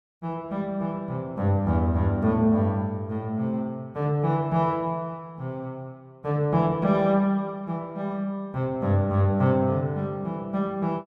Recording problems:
none

